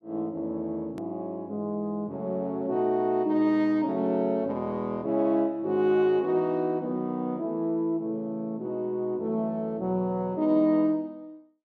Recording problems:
click at an edit; at 1 s

